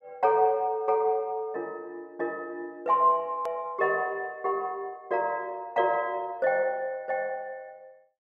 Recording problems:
edit click; at 3.5 s

